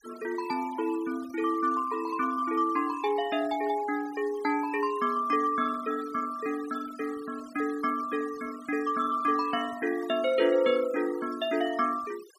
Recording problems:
denoising artefacts; signal-to-artefact ratio 18 dB

